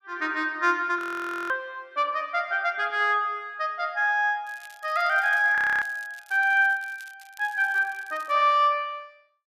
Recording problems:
frozen audio; at 1 s for 0.5 s and at 5.5 s
crackling; from 4.5 to 8.5 s; loose cable, SNR 27 dB

